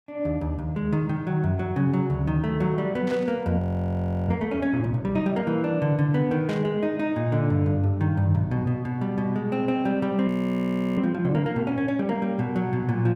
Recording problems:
burst of static; at 3 s and at 6.5 s; peak -10 dB vs average level
audio freezing; at 3.5 s for 0.5 s and at 10 s for 0.5 s

